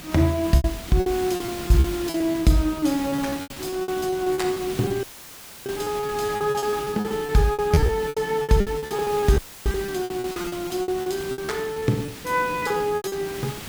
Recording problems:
background hiss; SNR 12 dB
packet loss; 18% of the sound replaced, filled with repeated pitch periods
audio cutting out; at 5 s for 0.5 s and at 9.5 s; filled with static

